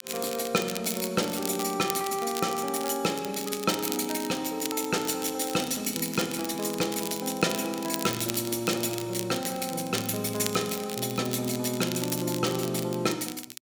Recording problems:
crackle; vinyl, SNR 8 dB

